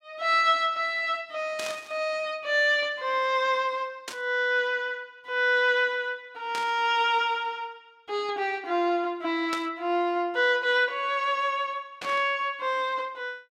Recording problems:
burst of static; 5 times, first at 1.5 s; peak -4 dB vs average level

